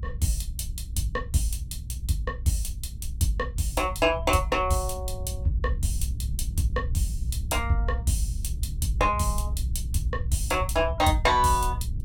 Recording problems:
low-frequency rumble; below 86 Hz, SNR 5 dB

